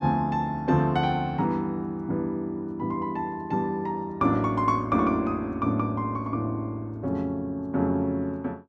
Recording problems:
none

